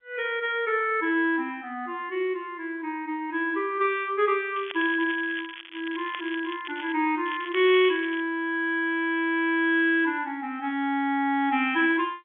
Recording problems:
phone line; 240 Hz to 3.5 kHz, G.711
crackling; from 4.5 to 7 s and at 7.5 s; loose cable, SNR 15 dB

